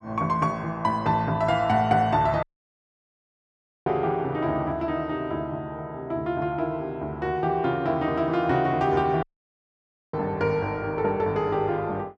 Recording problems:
dropout; at 2.5 s for 1.5 s and at 9 s for 1 s

